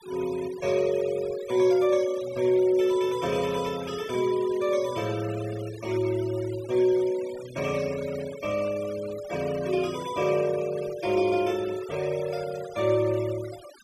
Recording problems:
noise reduction artefacts; signal-to-artefact ratio 17 dB

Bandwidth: 14 kHz